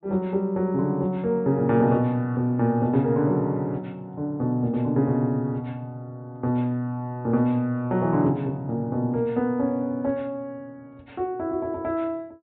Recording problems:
treble missing; nothing above 4 kHz

